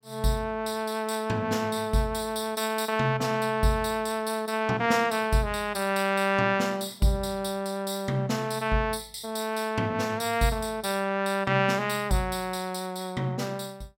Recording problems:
none

